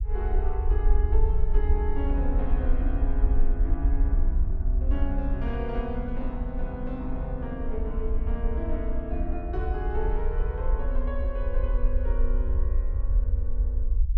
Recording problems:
rumble; below 54 Hz, strongest tone 20 Hz, SNR -6 dB

